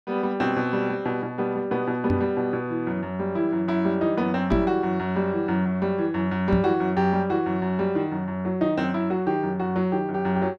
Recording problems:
microphone bump; at 2 s, at 4.5 s and at 6.5 s; peak +3 dB vs average level

